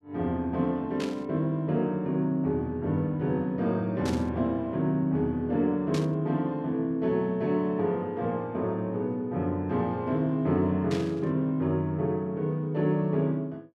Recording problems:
static burst; 4 times, first at 1 s; peak -6 dB vs average level

